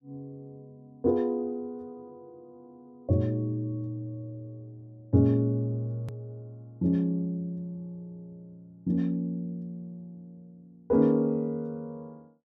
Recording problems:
hard cut with a click; at 6 s

